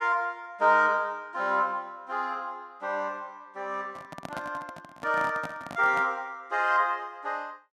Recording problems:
handling noise; from 4 to 6 s; peak -6 dB vs average level

